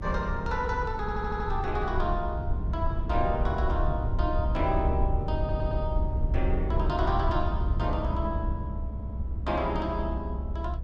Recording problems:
rumble; below 84 Hz, SNR 0 dB
stutter; at 1 s, at 5.5 s and at 9 s

